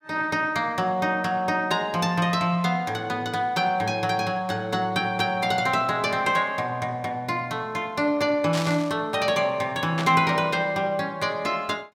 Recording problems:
static burst; at 8.5 s and at 10 s; peak -2 dB vs average level

